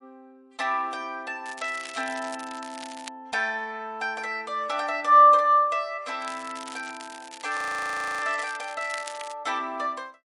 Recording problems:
lossy codec; MP3, log-spectral distance 5 dB, nothing above 19.5 kHz
crackle; from 1.5 to 3 s and from 6 to 9.5 s; loose cable, SNR 16 dB
frozen audio; at 7.5 s for 0.5 s

